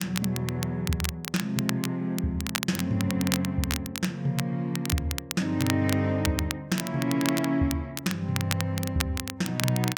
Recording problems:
crackling; vinyl, SNR 6 dB

